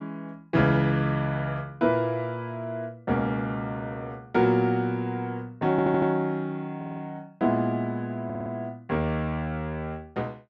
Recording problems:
audio stuttering; at 5.5 s, at 7 s and at 8.5 s

